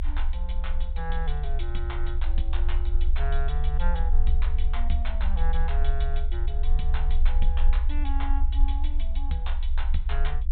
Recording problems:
treble cut off; nothing above 4 kHz
rumble; below 50 Hz, strongest tone 22 Hz, SNR -9 dB

